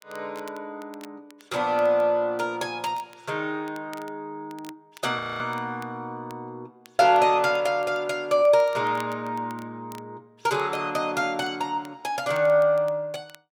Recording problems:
crackling; vinyl, SNR 27 dB
frozen audio; at 5 s

